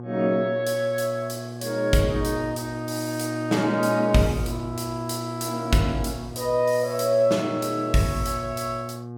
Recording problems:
hum; 60 Hz, harmonics up to 1.2 kHz, SNR 10 dB

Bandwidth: 17.5 kHz